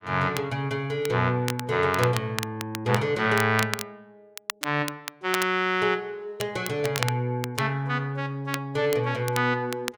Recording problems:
crackling; vinyl, SNR 10 dB

